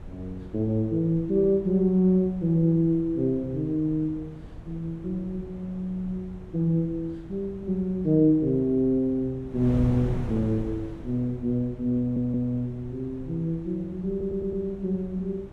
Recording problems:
wind on the microphone; below 210 Hz, SNR 15 dB
audio stuttering; at 12 s and at 14 s

